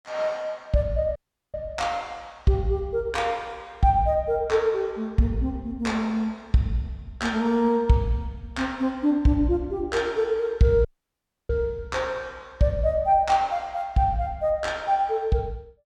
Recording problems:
audio cutting out; at 1 s and at 11 s for 0.5 s

